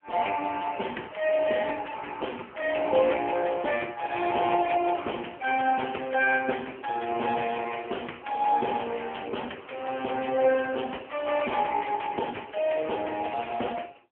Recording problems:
telephone audio; 260 Hz to 3.3 kHz, AMR-NB

